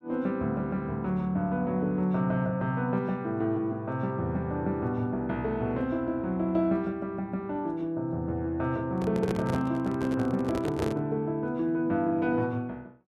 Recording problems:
handling noise; from 9 to 11 s; peak +1 dB vs average level

